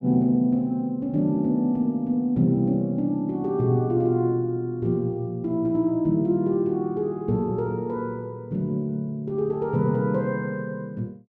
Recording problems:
none

